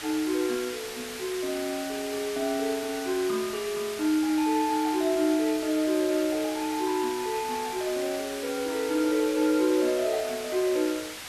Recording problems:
background hiss; SNR 10 dB

